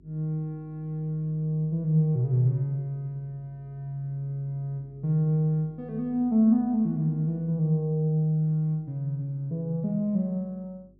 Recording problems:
electrical hum; 50 Hz, harmonics up to 400 Hz, SNR 29 dB

